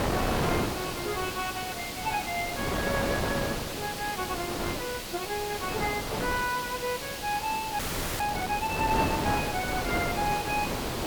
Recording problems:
hiss; slope +1 dB per octave, SNR 5 dB
wind on the microphone; below 1 kHz, SNR 1 dB
frozen audio; at 8 s

